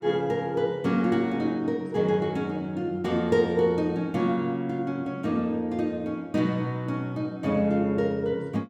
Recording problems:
none

